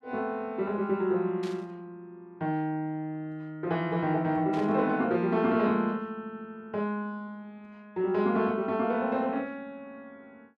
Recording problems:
burst of static; at 1.5 s and at 4.5 s; peak -11 dB vs average level

